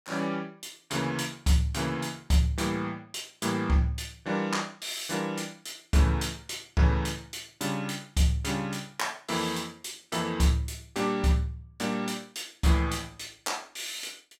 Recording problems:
none

